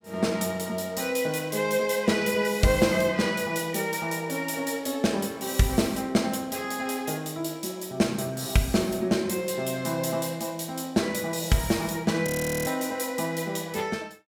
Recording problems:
frozen audio; at 12 s

